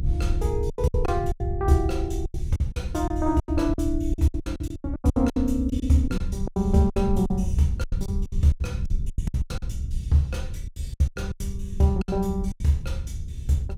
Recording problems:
mains hum; 50 Hz, harmonics up to 500 Hz, SNR 22 dB
rumble; below 82 Hz, SNR 5 dB
packet loss; 18% of the sound replaced, filled with silence

